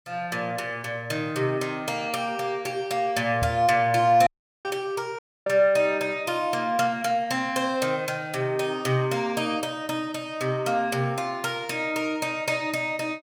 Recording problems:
microphone bump; at 3.5 s; peak -2 dB vs average level
audio cutting out; at 4.5 s and at 5 s

